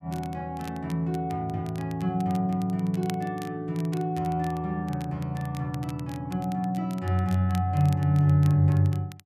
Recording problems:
crackle; vinyl, SNR 23 dB

